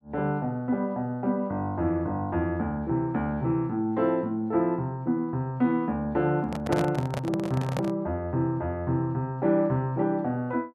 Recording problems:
handling noise; from 6.5 to 8 s; peak +3 dB vs average level

